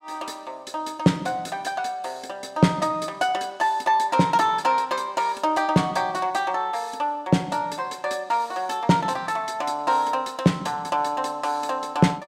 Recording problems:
none

